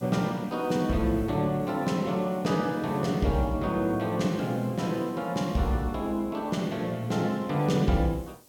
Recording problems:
background hiss; SNR 27 dB

